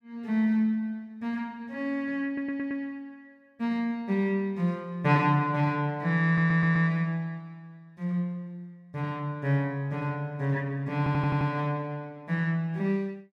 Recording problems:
stutter; at 2.5 s, at 6.5 s and at 11 s

